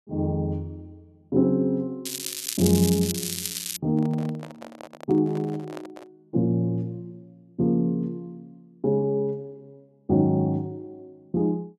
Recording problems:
crackling; from 2 to 4 s; loose cable, SNR 5 dB
microphone handling noise; from 4 to 6 s; peak -10 dB vs average level

